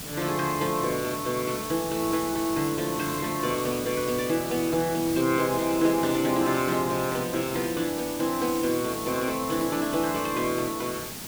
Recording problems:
hiss; SNR 8 dB

